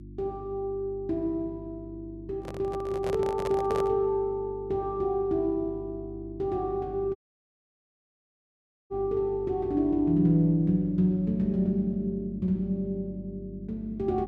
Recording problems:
mains hum; 50 Hz, harmonics up to 350 Hz, SNR 15 dB
handling noise; from 2.5 to 4 s; peak -3 dB vs average level
dropout; at 7 s for 2 s

